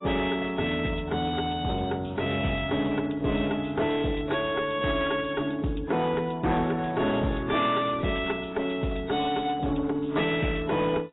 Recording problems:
lossy compression; AAC, log-spectral distance 5 dB, nothing above 3.4 kHz
distorted audio; hard clipping, uneven, signal-to-distortion ratio 11 dB

